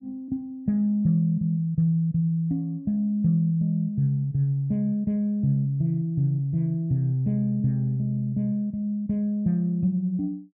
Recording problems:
none

